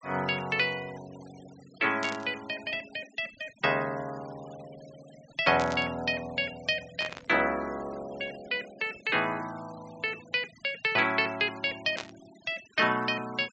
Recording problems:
low-pass filter; nothing above 8 kHz
denoising artefacts; signal-to-artefact ratio 21 dB
burst of static; 4 times, first at 2 s; peak -3 dB vs average level

